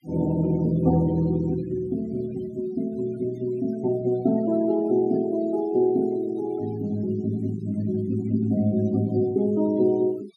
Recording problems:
denoising artefacts; signal-to-artefact ratio 21 dB

